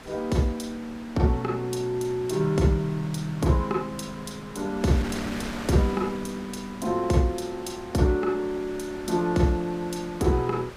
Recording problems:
wind on the microphone; below 2.1 kHz, SNR 14 dB

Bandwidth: 15.5 kHz